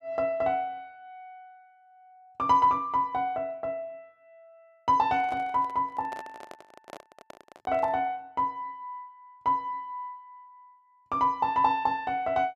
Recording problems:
microphone handling noise; from 5 to 8 s; peak -10 dB vs average level

